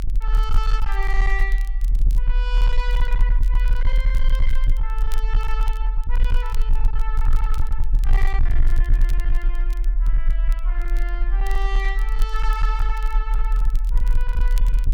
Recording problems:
distortion; hard clipping, signal-to-distortion ratio 12 dB
rumble; below 40 Hz, SNR -10 dB
crackling; vinyl, SNR 16 dB

